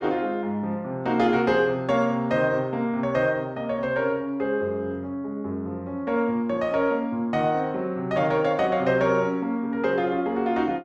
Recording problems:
none

